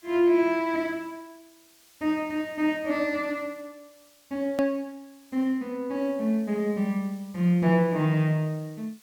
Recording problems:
background hiss; slope +1 dB per octave, SNR 29 dB
click at an edit; at 4.5 s

